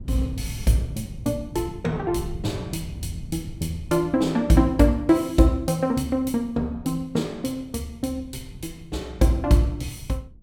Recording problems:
wind on the microphone; below 150 Hz, SNR 15 dB

